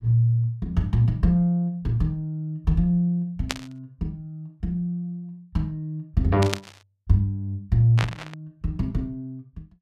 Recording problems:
burst of static; at 3.5 s, at 6.5 s and at 8 s; peak +2 dB vs average level

